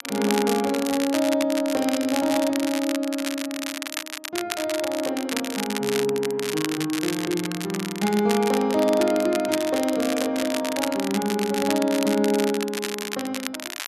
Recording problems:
crackling; vinyl, SNR 7 dB

